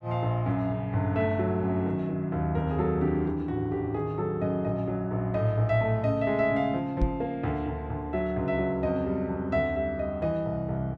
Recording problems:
knock on the microphone; at 7 s; peak +5 dB vs average level

